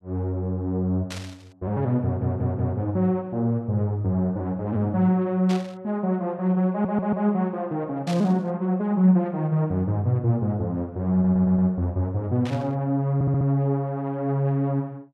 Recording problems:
static burst; 4 times, first at 1 s; peak -8 dB vs average level
stutter; 4 times, first at 2 s

